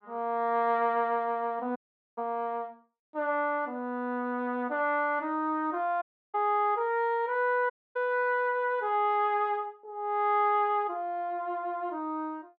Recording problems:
audio cutting out; at 2 s, at 6 s and at 7.5 s

